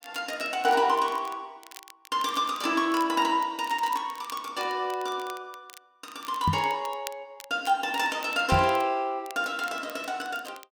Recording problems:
crackling; vinyl, SNR 20 dB
microphone thump; at 6.5 s and at 8.5 s; peak +4 dB vs average level

